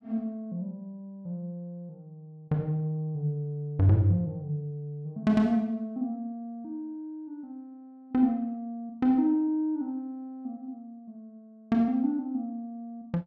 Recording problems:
none

